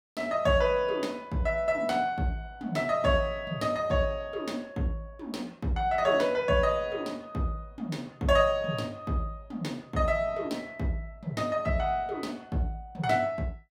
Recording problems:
none

